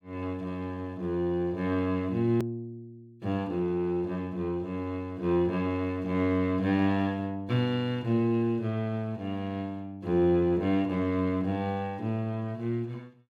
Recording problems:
edit click; at 2.5 s

